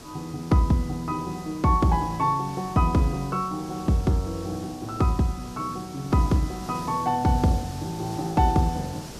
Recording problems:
hiss; SNR 16 dB

